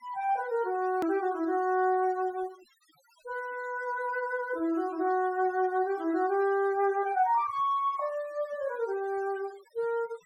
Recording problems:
denoising artefacts; signal-to-artefact ratio 25 dB
click at an edit; at 1 s

